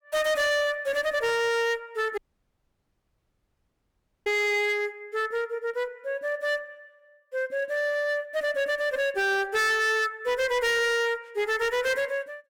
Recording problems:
distortion; hard clipping, signal-to-distortion ratio 7 dB
audio cutting out; at 2 s for 2 s

